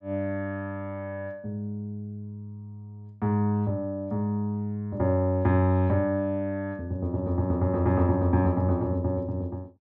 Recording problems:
none

